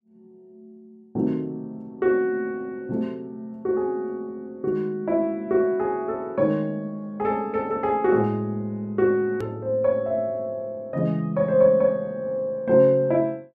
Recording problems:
edit click; at 9.5 s

